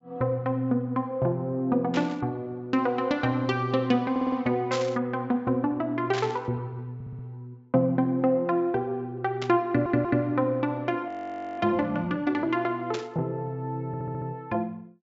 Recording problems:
low-pass filter; nothing above 8 kHz
burst of static; 5 times, first at 2 s; peak -2 dB vs average level
audio stuttering; 4 times, first at 4 s
frozen audio; at 11 s for 0.5 s

